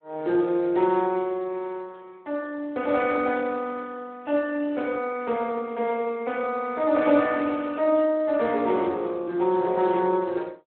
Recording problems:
phone line; 260 Hz to 2.7 kHz, Speex

